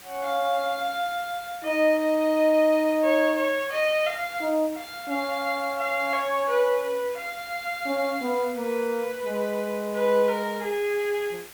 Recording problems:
background hiss; slope -1 dB per octave, SNR 18 dB

